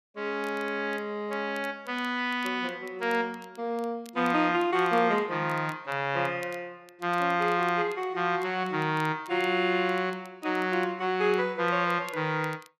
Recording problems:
crackle; vinyl, SNR 27 dB

